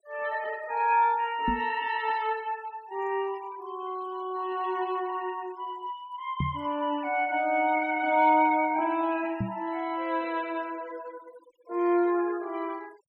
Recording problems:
denoising artefacts; signal-to-artefact ratio 24 dB
knock on the microphone; at 1.5 s, at 6.5 s and at 9.5 s; peak +2 dB vs average level

